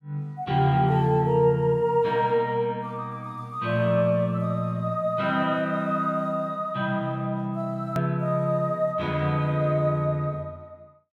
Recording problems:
hard cut with a click; at 8 s

